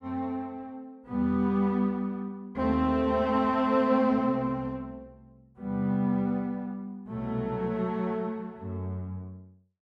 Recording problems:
none

